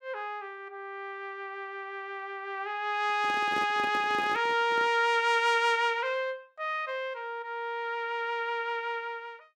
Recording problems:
handling noise; from 3 to 5 s; peak -5 dB vs average level

